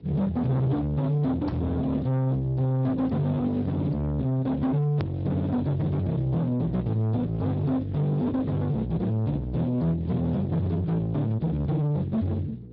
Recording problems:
low-pass filter; nothing above 5.5 kHz
lossy codec; Speex, log-spectral distance 2 dB
distortion; soft clipping, signal-to-distortion ratio 6 dB
hum; 60 Hz, harmonics up to 600 Hz, SNR 23 dB
hard cut with a click; at 5 s

